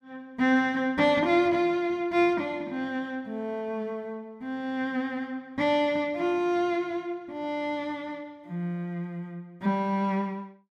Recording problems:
none

